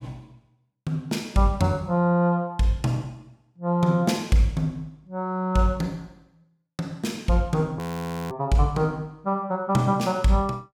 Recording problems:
frozen audio; at 8 s for 0.5 s

